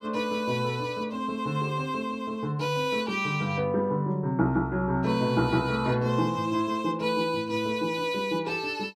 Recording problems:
none

